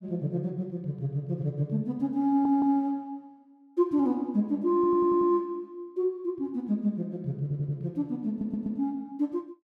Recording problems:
stutter; 4 times, first at 2.5 s

